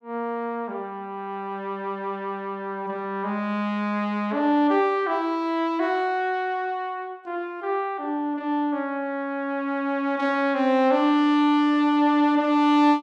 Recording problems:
none

